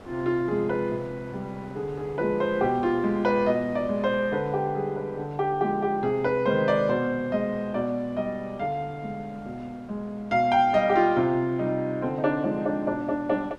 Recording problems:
wind noise; below 940 Hz, SNR 22 dB

